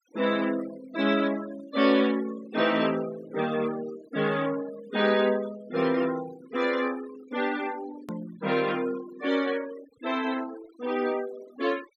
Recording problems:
noise reduction artefacts; signal-to-artefact ratio 16 dB
click at an edit; at 8 s

